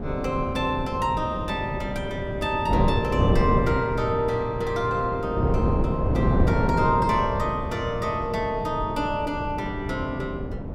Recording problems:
wind noise; below 320 Hz, SNR 1 dB

